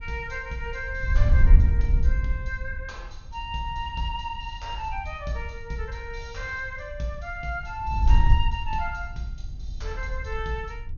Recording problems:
treble missing; nothing above 6.7 kHz
wind noise; below 64 Hz, SNR -7 dB

